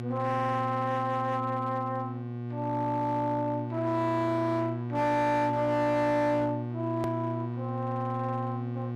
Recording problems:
distortion; hard clipping, signal-to-distortion ratio 12 dB
hum; 60 Hz, harmonics up to 1.2 kHz, SNR 6 dB
hard cut with a click; at 7 s

